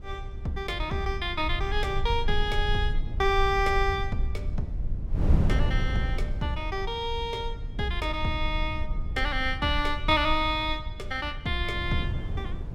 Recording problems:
low-frequency rumble; below 60 Hz, strongest tone 20 Hz, SNR 6 dB
wind noise; below 130 Hz, SNR 4 dB

